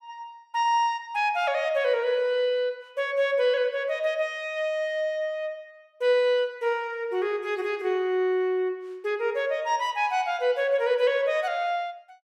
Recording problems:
none

